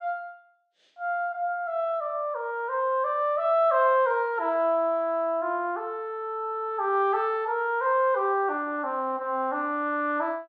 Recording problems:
none

